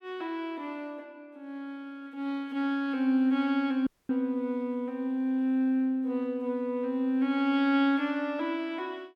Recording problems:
dropout; at 4 s

